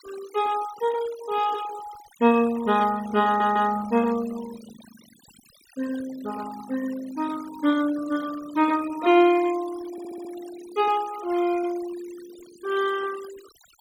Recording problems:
noise reduction artefacts; signal-to-artefact ratio 18 dB
audio stuttering; at 3.5 s and at 10 s

